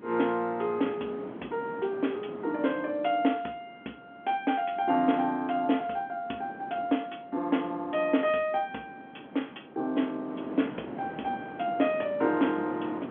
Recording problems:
telephone audio; 190 Hz to 3.7 kHz, G.711
wind noise; below 650 Hz, SNR 14 dB

